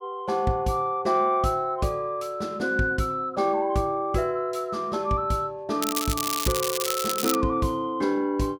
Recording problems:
crackle; from 6 to 7.5 s; loose cable, SNR 3 dB

